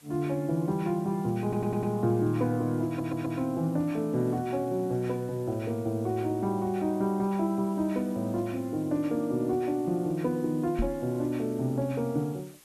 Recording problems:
hiss; slope -1 dB per octave, SNR 25 dB
audio stuttering; at 1.5 s and at 3 s
microphone thump; at 11 s; peak +2 dB vs average level

